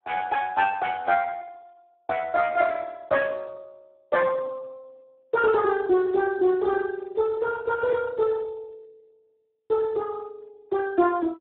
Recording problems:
telephone audio; 240 Hz to 3.7 kHz, Speex

